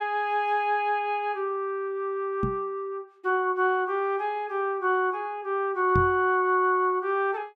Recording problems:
knock on the microphone; at 2.5 s and at 6 s; peak +2 dB vs average level

